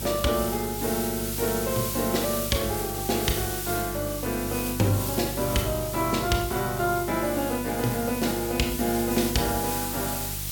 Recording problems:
hum; 50 Hz, harmonics up to 650 Hz, SNR 11 dB
background hiss; slope +2 dB per octave, SNR 5 dB

